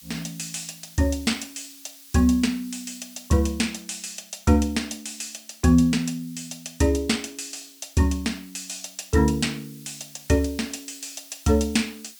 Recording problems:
hiss; slope +6 dB per octave, SNR 21 dB

